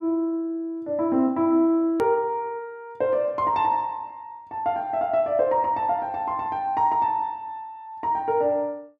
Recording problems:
click at an edit; at 2 s

